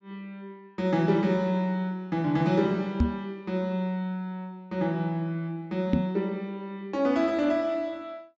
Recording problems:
treble cut off; nothing above 8 kHz
microphone thump; at 3 s and at 6 s; peak +8 dB vs average level

